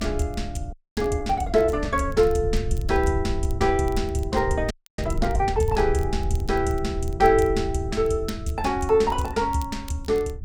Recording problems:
rumble; below 86 Hz, SNR 8 dB
crackling; vinyl, SNR 26 dB
frozen audio; at 0.5 s and at 4.5 s

